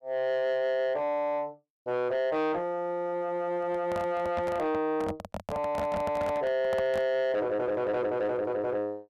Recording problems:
distorted audio; soft clipping, signal-to-distortion ratio 10 dB
handling noise; from 3.5 to 7 s; peak 0 dB vs average level

